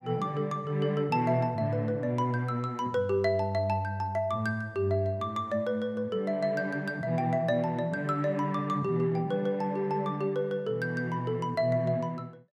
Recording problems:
none

